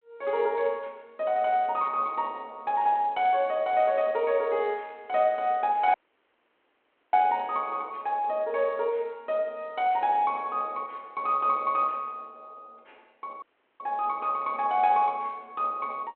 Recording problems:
phone line; 260 Hz to 3.3 kHz, G.726
dropout; at 6 s for 1 s and at 13 s

